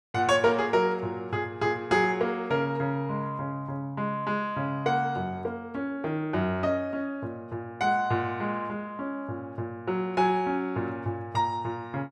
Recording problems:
none

